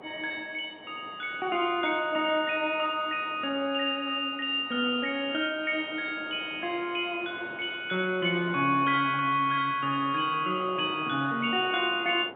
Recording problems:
phone line; 240 Hz to 3.7 kHz, G.711
wind on the microphone; below 930 Hz, SNR 19 dB

